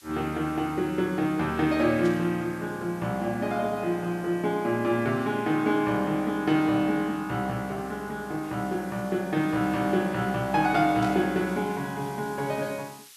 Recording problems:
hiss; slope +5 dB per octave, SNR 23 dB
static burst; at 2 s and at 11 s; peak -12 dB vs average level

